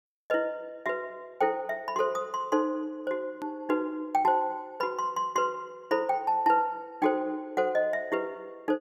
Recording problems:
click at an edit; at 3.5 s

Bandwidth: 15 kHz